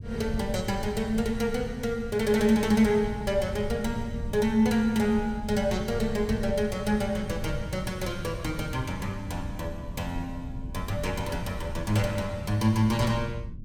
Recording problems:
rumble; below 140 Hz, SNR 10 dB

